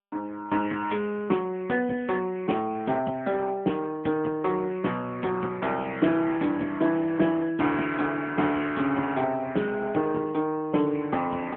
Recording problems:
phone line; 190 Hz to 3.3 kHz, AMR-NB

